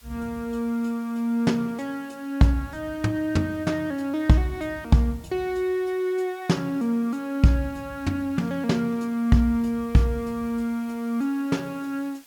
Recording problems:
hiss; slope 0 dB per octave, SNR 27 dB

